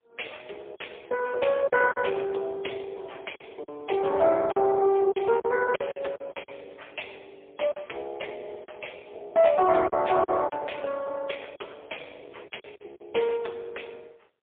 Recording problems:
telephone audio; 340 Hz to 3.3 kHz, AMR-NB, then MP3
lost packets; 6% of the sound replaced, filled with silence

